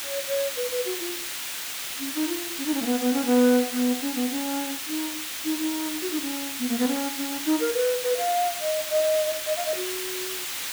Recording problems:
hiss; SNR 3 dB

